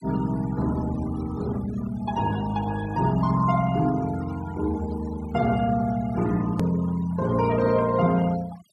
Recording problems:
denoising artefacts; signal-to-artefact ratio 19 dB
click at an edit; at 6.5 s

